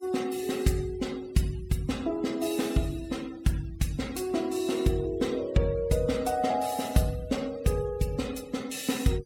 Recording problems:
noise reduction artefacts; signal-to-artefact ratio 19 dB

